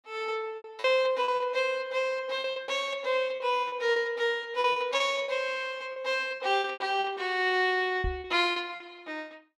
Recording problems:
lost packets; 11% of the sound replaced, filled with repeated pitch periods
microphone bump; at 8 s; peak -2 dB vs average level

